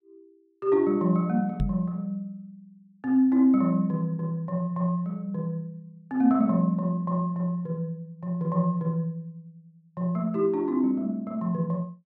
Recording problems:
knock on the microphone; at 1.5 s; peak +2 dB vs average level

